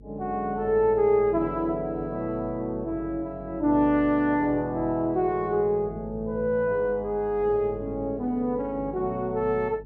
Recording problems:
electrical hum; 50 Hz, harmonics up to 500 Hz, SNR 19 dB

